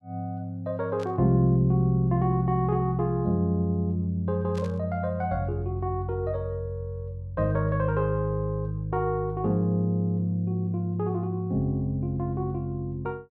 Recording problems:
static burst; at 1 s and at 4.5 s; peak -14 dB vs average level

